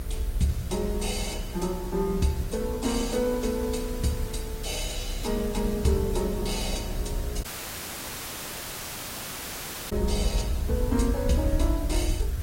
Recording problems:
lossy codec; Opus, log-spectral distance 2 dB, nothing above 16 kHz
hum; 60 Hz, harmonics up to 720 Hz, SNR 13 dB
hiss; SNR 14 dB
rumble; below 68 Hz, strongest tone 34 Hz, SNR 4 dB
dropout; at 7.5 s for 2.5 s

